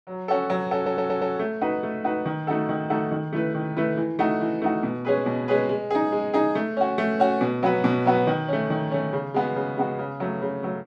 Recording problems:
audio stuttering; at 1 s

